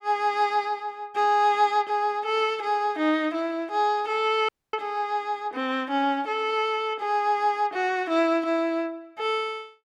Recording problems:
audio cutting out; at 4.5 s

